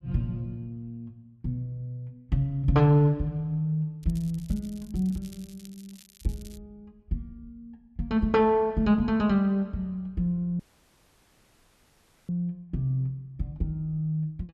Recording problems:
crackling; from 4 to 6.5 s; loose cable, SNR 25 dB
dropout; at 11 s for 1.5 s

